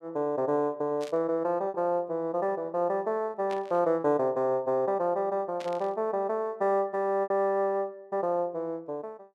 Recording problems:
lost packets; 3% of the sound replaced, filled with repeated pitch periods
static burst; at 1 s, at 3.5 s and at 5.5 s; peak -11 dB vs average level

